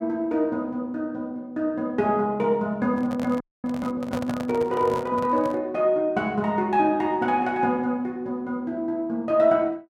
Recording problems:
handling noise; from 3 to 5.5 s; peak -3 dB vs average level
frozen audio; at 3.5 s

